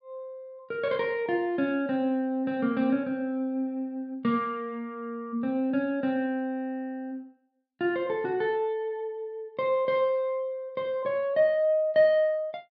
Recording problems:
none

